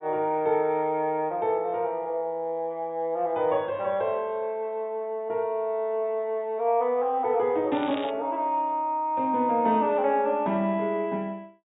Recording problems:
treble missing; nothing above 4 kHz
crackling; at 7.5 s; loose cable, SNR 16 dB

